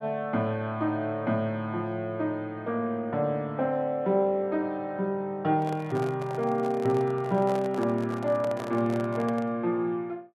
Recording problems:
microphone handling noise; from 5.5 to 9.5 s; peak -5 dB vs average level

